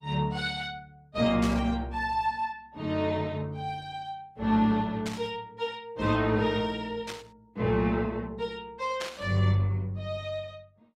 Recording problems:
codec artefacts; Opus, log-spectral distance 2 dB
burst of static; 4 times, first at 1.5 s; peak -3 dB vs average level

